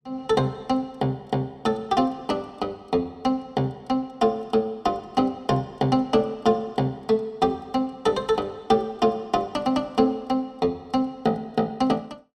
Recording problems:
none

